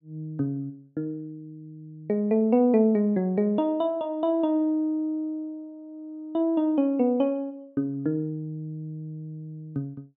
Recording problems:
none

